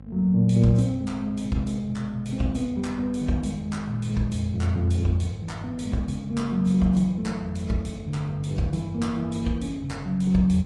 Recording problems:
lossy compression; AAC, log-spectral distance 2 dB, nothing above 10.7 kHz
hum; 50 Hz, harmonics up to 800 Hz, SNR 18 dB

